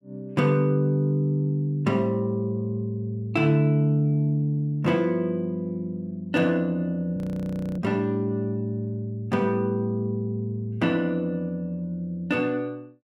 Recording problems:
audio freezing; at 7 s for 0.5 s

